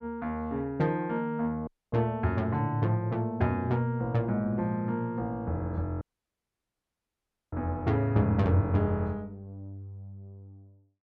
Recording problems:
audio cutting out; at 1.5 s and at 6 s for 1.5 s

